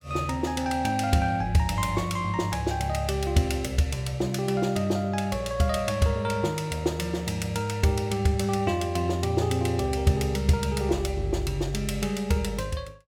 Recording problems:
none

